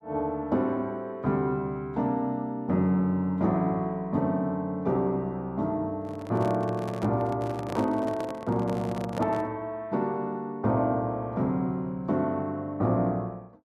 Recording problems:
handling noise; from 6 to 9.5 s; peak -3 dB vs average level

